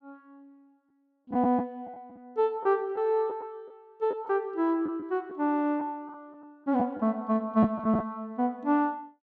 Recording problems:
packet loss; 5% of the sound replaced, filled with the last packet

